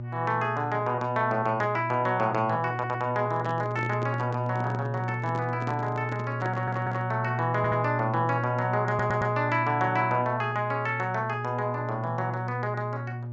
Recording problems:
treble missing; nothing above 8 kHz
mains hum; 60 Hz, harmonics up to 600 Hz, SNR 6 dB
stutter; 4 times, first at 2.5 s
microphone handling noise; from 3.5 to 7 s; peak -5 dB vs average level

